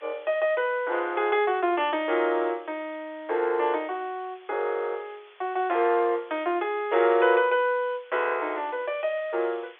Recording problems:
phone line; 320 Hz to 3.5 kHz, G.711
hiss; SNR 27 dB

